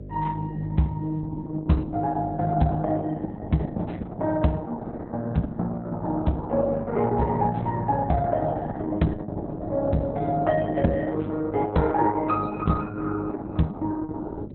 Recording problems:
lossy codec; Opus, log-spectral distance 3 dB, nothing above 4.1 kHz
hum; 50 Hz, harmonics up to 600 Hz, SNR 12 dB

